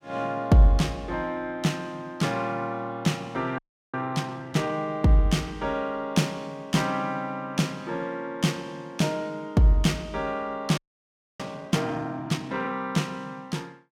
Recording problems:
audio freezing; at 3.5 s and at 11 s for 0.5 s

